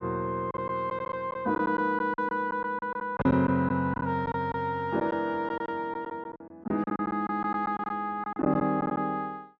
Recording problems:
lost packets; 11% of the sound replaced, filled with silence

